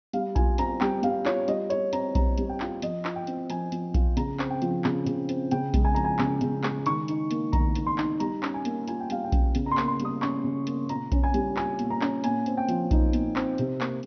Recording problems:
treble missing; nothing above 6.1 kHz

